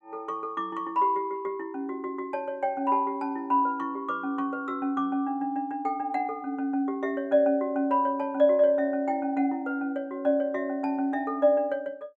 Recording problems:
none

